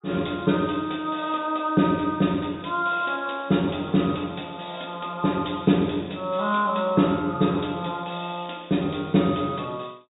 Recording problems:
treble cut off; nothing above 4 kHz

